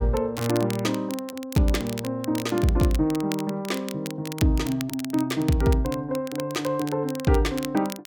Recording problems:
crackling; vinyl, SNR 13 dB

